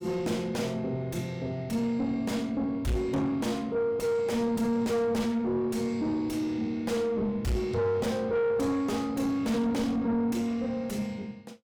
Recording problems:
distorted audio; soft clipping, signal-to-distortion ratio 7 dB

